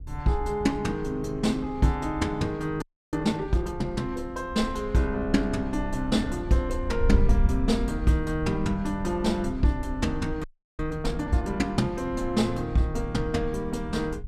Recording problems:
wind noise; below 68 Hz, SNR 8 dB
audio freezing; at 3 s and at 10 s

